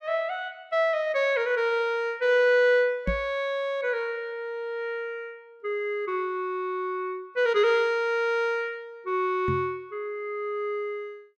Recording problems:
knock on the microphone; at 3 s and at 9.5 s; peak +1 dB vs average level

